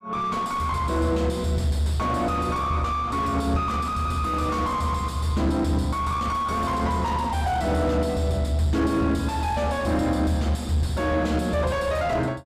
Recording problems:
distorted audio; soft clipping, signal-to-distortion ratio 7 dB

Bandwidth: 14.5 kHz